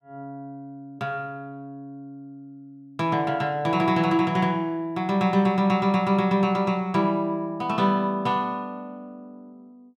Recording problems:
none

